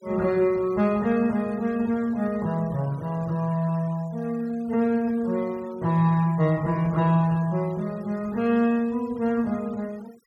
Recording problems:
noise reduction artefacts; signal-to-artefact ratio 25 dB

